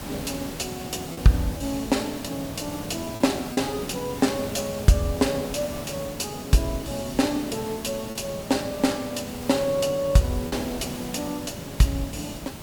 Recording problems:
background hiss; slope -4 dB per octave, SNR 10 dB
lost packets; 2% of the sound replaced, filled with repeated pitch periods

